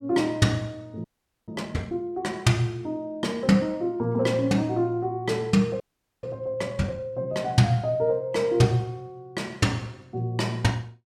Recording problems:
audio freezing; at 1 s and at 6 s

